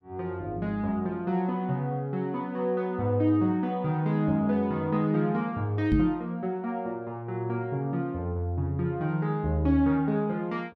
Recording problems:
microphone thump; at 6 s; peak +5 dB vs average level

